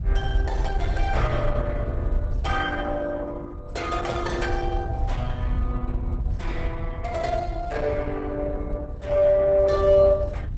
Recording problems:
codec artefacts; Opus, log-spectral distance 2 dB, nothing above 8 kHz
low-frequency rumble; below 74 Hz, SNR 4 dB

